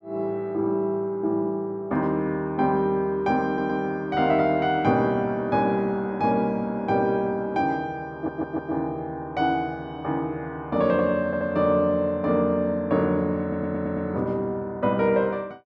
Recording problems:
audio stuttering; 4 times, first at 3.5 s

